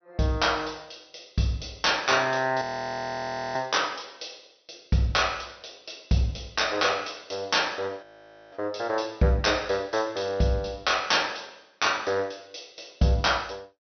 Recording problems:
low-pass filter; nothing above 6.1 kHz
audio freezing; at 2.5 s for 1 s and at 8 s

